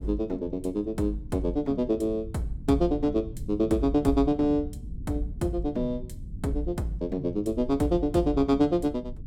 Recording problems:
low-frequency rumble; below 120 Hz, SNR 14 dB

